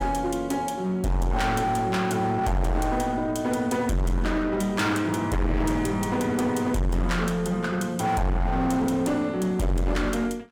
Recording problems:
distortion; hard clipping, signal-to-distortion ratio 6 dB

